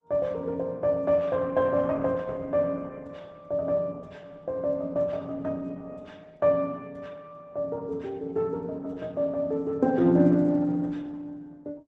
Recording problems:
lossy compression; Opus, log-spectral distance 2 dB

